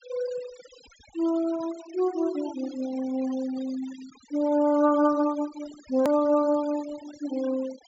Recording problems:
treble missing; nothing above 8 kHz
denoising artefacts; signal-to-artefact ratio 20 dB
click at an edit; at 6 s

